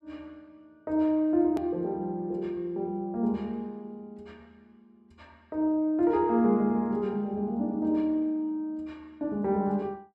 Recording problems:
click at an edit; at 1.5 s

